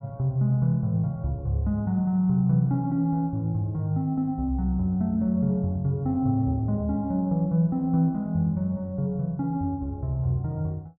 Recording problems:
none

